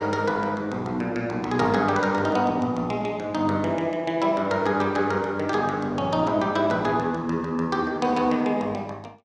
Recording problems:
none

